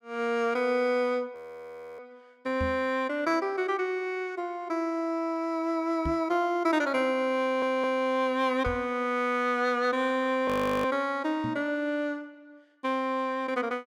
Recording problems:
frozen audio; at 1.5 s for 0.5 s and at 10 s
microphone thump; 4 times, first at 2.5 s; peak -2 dB vs average level
audio stuttering; at 7.5 s

